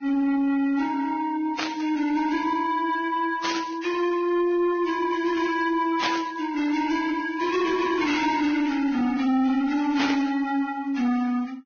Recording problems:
lossy codec; Vorbis, then Vorbis, log-spectral distance 3 dB, nothing above 6.3 kHz
distorted audio; soft clipping, signal-to-distortion ratio 10 dB
static burst; 4 times, first at 1.5 s; peak +2 dB vs average level

